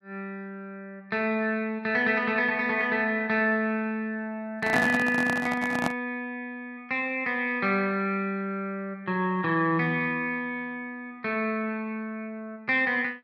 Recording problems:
microphone handling noise; from 4.5 to 6 s; peak +2 dB vs average level

